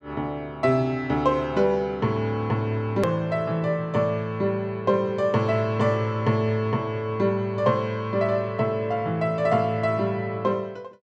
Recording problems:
hard cut with a click; at 3 s

